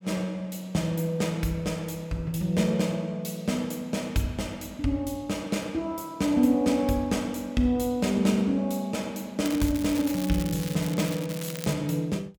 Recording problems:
crackling; from 9.5 to 12 s; loose cable, SNR 12 dB

